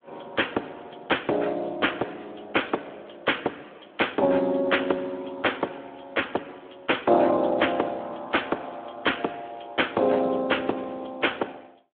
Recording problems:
telephone audio; 320 Hz to 3.5 kHz, Speex

